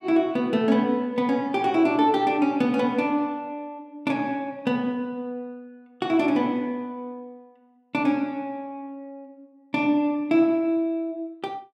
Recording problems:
none

